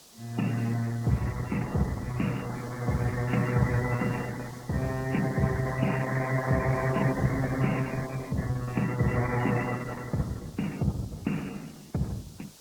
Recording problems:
codec artefacts; MP3, then Opus, log-spectral distance 4 dB
background hiss; SNR 22 dB

